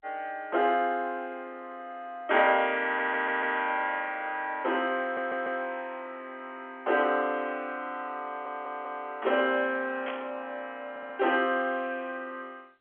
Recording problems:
phone line; 300 Hz to 3.5 kHz, G.711
stutter; 4 times, first at 3 s
static burst; at 10 s; peak -6 dB vs average level

